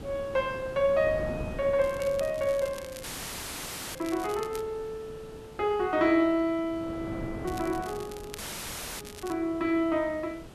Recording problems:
background hiss; SNR 24 dB
wind on the microphone; below 470 Hz, SNR 14 dB
crackle; from 2 to 4.5 s and from 7.5 to 9.5 s; loose cable, SNR 18 dB
dropout; at 3 s for 1 s and at 8.5 s for 0.5 s; filled with static

